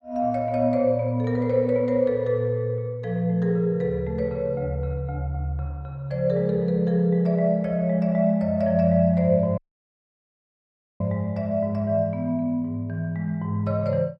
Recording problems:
audio cutting out; at 9.5 s for 1.5 s

